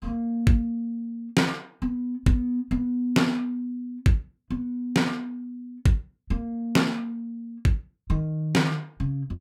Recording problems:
none

